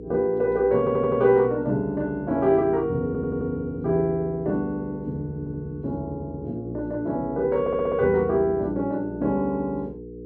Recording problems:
electrical hum; 60 Hz, harmonics up to 480 Hz, SNR 14 dB
audio stuttering; 4 times, first at 1 s

